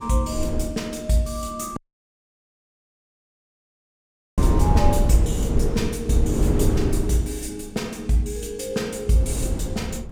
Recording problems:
wind on the microphone; below 170 Hz, SNR -1 dB
audio cutting out; at 2 s for 2.5 s

